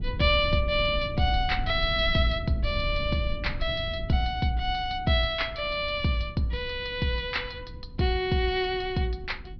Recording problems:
treble missing; nothing above 5.5 kHz
rumble; below 96 Hz, SNR 10 dB

